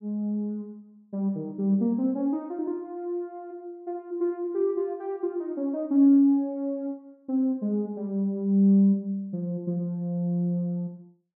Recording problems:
none

